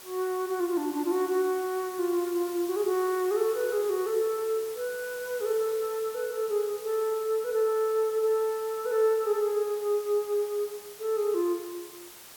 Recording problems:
hiss; slope -1 dB per octave, SNR 16 dB

